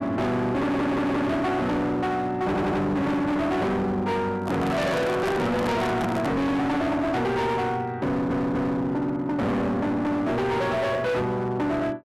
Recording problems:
distorted audio; hard clipping, signal-to-distortion ratio 6 dB
stutter; at 0.5 s, at 2.5 s and at 8 s
microphone handling noise; from 4.5 to 6.5 s; peak +1 dB vs average level

